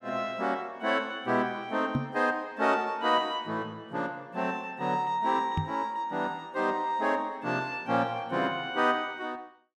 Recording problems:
microphone thump; at 2 s and at 5.5 s; peak +4 dB vs average level

